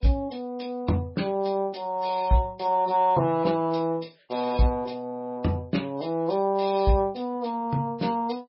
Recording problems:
codec artefacts; MP3, log-spectral distance 3 dB, nothing above 5.2 kHz

